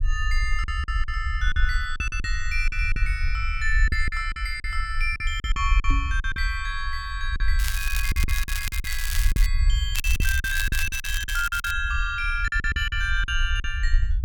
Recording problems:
rumble; below 56 Hz, SNR 1 dB
packet loss; 12% of the sound replaced, filled with silence
microphone thump; at 6 s; peak 0 dB vs average level
crackle; from 7.5 to 9.5 s and from 10 to 12 s; loose cable, SNR 5 dB

